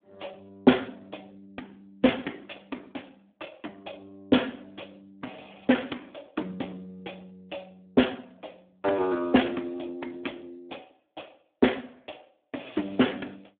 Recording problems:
phone line; 220 Hz to 3.6 kHz, Speex

